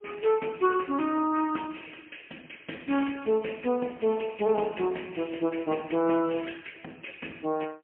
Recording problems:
telephone audio; 190 Hz to 3.1 kHz, AMR-NB, then MP3

